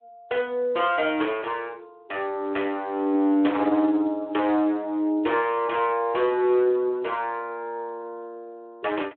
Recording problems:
phone line; 260 Hz to 3.5 kHz, Speex
distortion; hard clipping, signal-to-distortion ratio 9 dB

